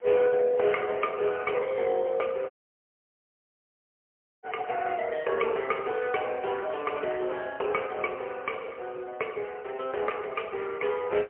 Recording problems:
telephone audio; 320 Hz to 3.1 kHz, AMR-NB, then MP3
wind on the microphone; below 1.4 kHz, SNR 23 dB
dropout; at 2.5 s for 2 s

